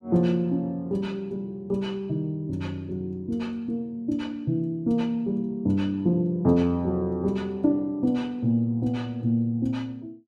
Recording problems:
none

